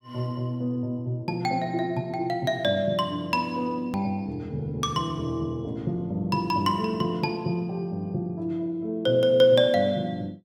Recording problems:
click at an edit; at 4 s

